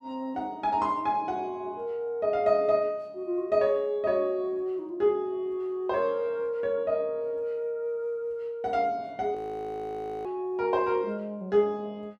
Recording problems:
audio freezing; at 9.5 s for 1 s

